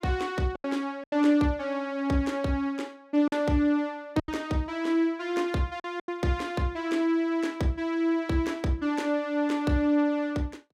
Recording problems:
packet loss; 4% of the sound replaced, filled with silence

